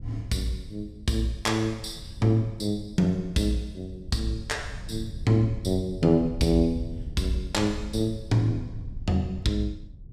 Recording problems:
wind on the microphone; below 100 Hz, SNR 13 dB

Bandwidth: 14.5 kHz